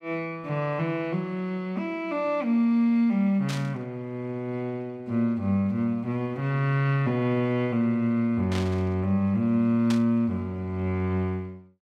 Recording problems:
burst of static; at 3.5 s, at 8.5 s and at 10 s; peak -4 dB vs average level

